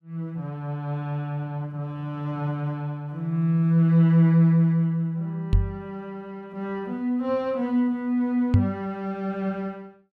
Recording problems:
knock on the microphone; at 5.5 s and at 8.5 s; peak +9 dB vs average level

